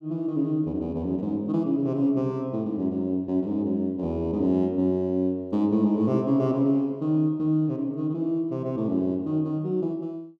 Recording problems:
none

